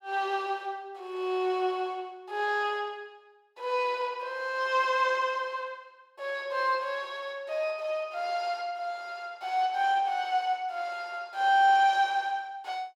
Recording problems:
none

